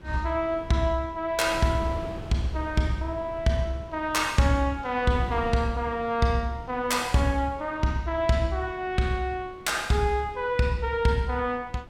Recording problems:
wind noise; below 370 Hz, SNR 17 dB

